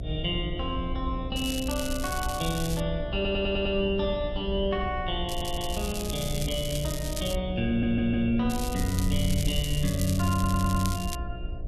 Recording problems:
hum; 60 Hz, harmonics up to 720 Hz, SNR 11 dB
wind noise; below 74 Hz, SNR 8 dB
crackling; from 1.5 to 3 s, from 5.5 to 7.5 s and from 8.5 to 11 s; loose cable, SNR 9 dB
audio stuttering; 4 times, first at 3 s

